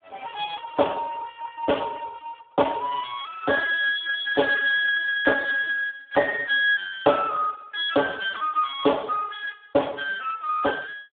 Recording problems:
telephone audio; 300 Hz to 3.6 kHz, Speex

